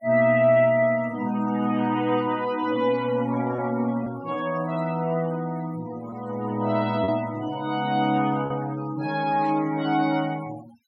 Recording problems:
noise reduction artefacts; signal-to-artefact ratio 19 dB
packet loss; 1.3% of the sound replaced, filled with repeated pitch periods
static burst; at 9.5 s; peak -18 dB vs average level

